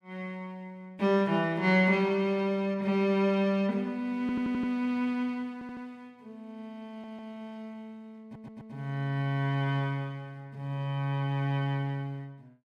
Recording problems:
audio stuttering; 4 times, first at 4 s

